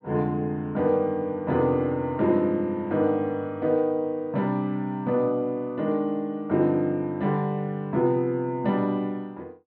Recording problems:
treble missing; nothing above 5.5 kHz

